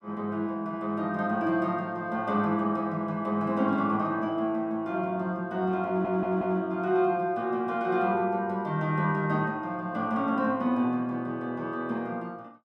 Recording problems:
stutter; at 6 s

